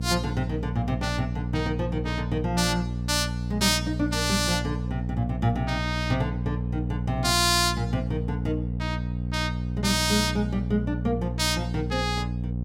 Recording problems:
hum; 60 Hz, harmonics up to 540 Hz, SNR 3 dB

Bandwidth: 16.5 kHz